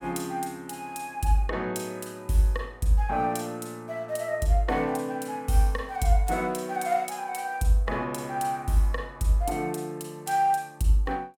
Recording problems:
none

